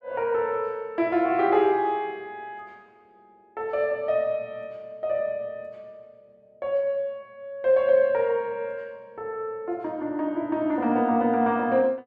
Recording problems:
none

